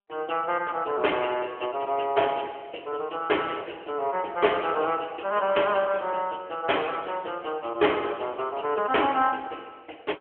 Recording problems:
phone line; 280 Hz to 3.3 kHz, AMR-NB

